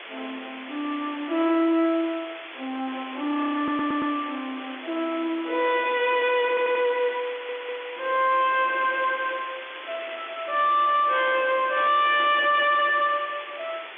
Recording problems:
phone line; 280 Hz to 3.6 kHz, G.711
distortion; hard clipping, signal-to-distortion ratio 7 dB
hiss; SNR 14 dB
audio stuttering; at 3.5 s, at 6.5 s and at 7.5 s
crackling; from 9 to 11 s; loose cable, SNR 22 dB

